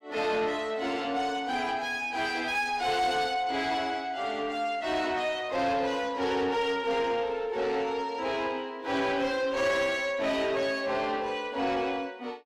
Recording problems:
distorted audio; soft clipping, signal-to-distortion ratio 10 dB

